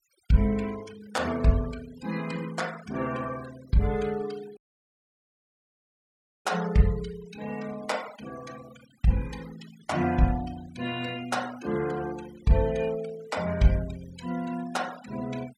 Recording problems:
noise reduction artefacts; signal-to-artefact ratio 17 dB
dropout; at 4.5 s for 2 s

